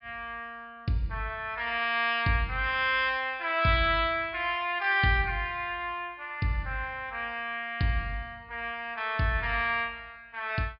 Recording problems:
treble cut off; nothing above 5.5 kHz

